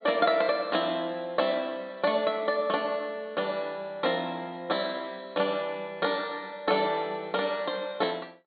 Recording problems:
low-pass filter; nothing above 4.5 kHz

